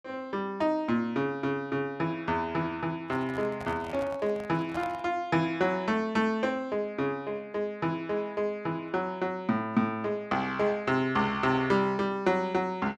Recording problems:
microphone handling noise; from 3 to 5 s; peak -7 dB vs average level

